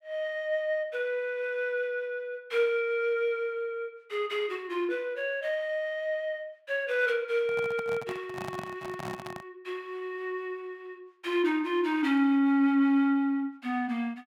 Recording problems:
microphone handling noise; from 7.5 to 9.5 s; peak -5 dB vs average level

